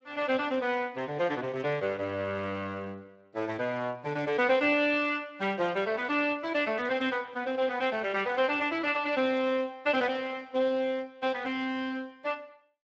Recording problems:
codec artefacts; Speex, log-spectral distance 3 dB

